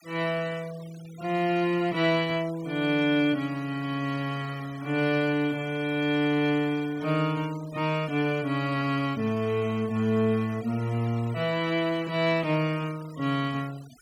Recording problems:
denoising artefacts; signal-to-artefact ratio 21 dB

